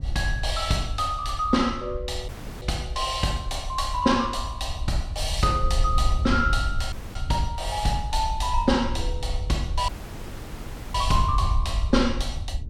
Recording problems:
wind noise; below 72 Hz, SNR 5 dB
audio cutting out; at 2.5 s, at 7 s and at 10 s for 1 s

